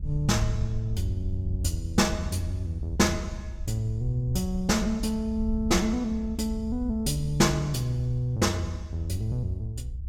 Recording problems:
rumble; below 68 Hz, SNR 8 dB

